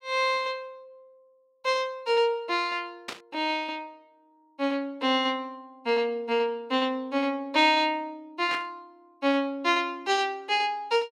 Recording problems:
static burst; at 3 s and at 8.5 s; peak -4 dB vs average level

